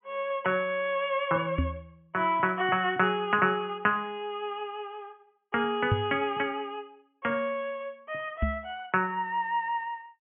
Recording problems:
treble cut off; nothing above 3.2 kHz
knock on the microphone; at 1.5 s, at 6 s and at 8.5 s; peak +6 dB vs average level

